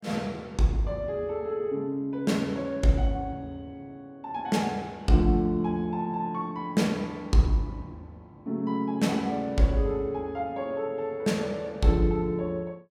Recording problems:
none

